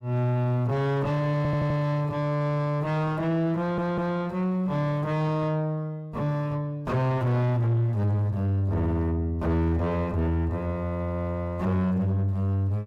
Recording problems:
distortion; soft clipping, signal-to-distortion ratio 7 dB
stutter; at 1.5 s and at 3.5 s

